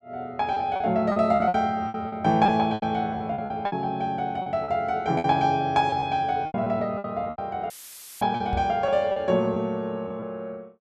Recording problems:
packet loss; 12% of the sound replaced, filled with repeated pitch periods
dropout; at 7.5 s for 0.5 s; filled with static
knock on the microphone; at 8.5 s; peak -2 dB vs average level

